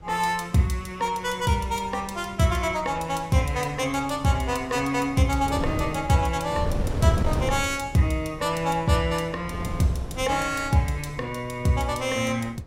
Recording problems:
wind on the microphone; below 260 Hz, SNR 10 dB

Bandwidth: 16 kHz